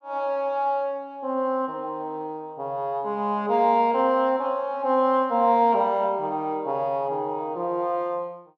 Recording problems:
none

